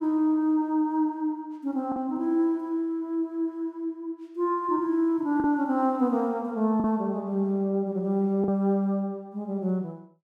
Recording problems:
packet loss; 1.6% of the sound replaced, filled with the last packet

